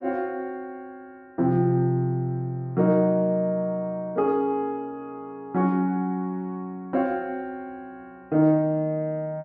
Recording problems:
none

